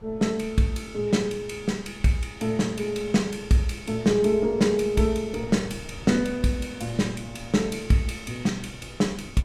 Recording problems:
wind noise; below 220 Hz, SNR 20 dB

